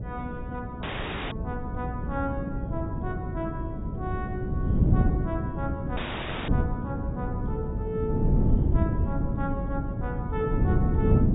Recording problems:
treble missing; nothing above 4 kHz
electrical hum; 60 Hz, harmonics up to 660 Hz, SNR 7 dB
wind on the microphone; below 190 Hz, SNR -6 dB
audio cutting out; at 1 s and at 6 s for 0.5 s

